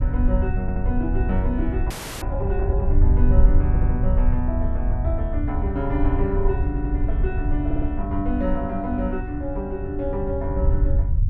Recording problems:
rumble; below 74 Hz, SNR -3 dB
audio stuttering; 4 times, first at 0.5 s
audio freezing; at 2 s

